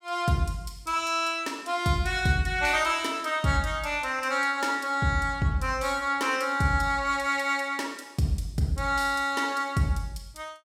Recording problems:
none

